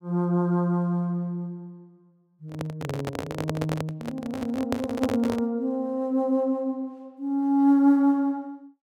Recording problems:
handling noise; from 2.5 to 5.5 s; peak +1 dB vs average level

